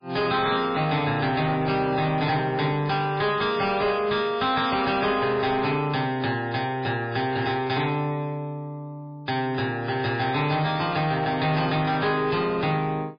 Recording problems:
codec artefacts; MP3, log-spectral distance 4 dB
distortion; soft clipping, signal-to-distortion ratio 11 dB

